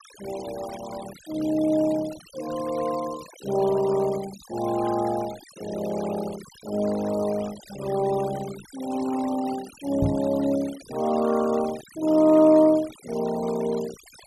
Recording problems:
denoising artefacts; signal-to-artefact ratio 18 dB
microphone thump; at 10 s; peak +3 dB vs average level

